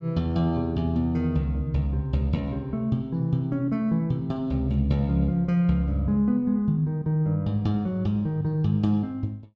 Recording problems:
none

